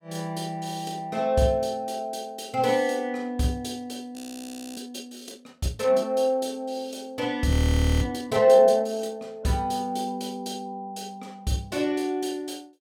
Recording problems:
frozen audio; at 4 s for 0.5 s and at 7.5 s for 0.5 s

